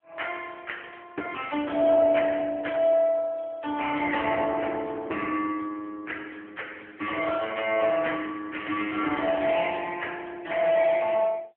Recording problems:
telephone audio; 240 Hz to 3.2 kHz, AMR-NB

